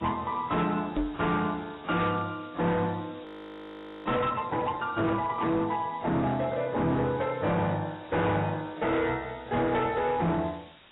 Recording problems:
lossy codec; AAC, log-spectral distance 5 dB, nothing above 3.8 kHz
distorted audio; hard clipping, signal-to-distortion ratio 10 dB
hiss; SNR 25 dB
knock on the microphone; at 1 s; peak +3 dB vs average level
audio freezing; at 3.5 s for 1 s

